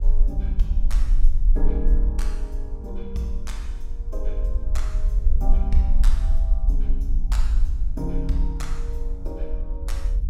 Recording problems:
rumble; below 44 Hz, strongest tone 20 Hz, SNR -9 dB
wind on the microphone; below 82 Hz, SNR 11 dB

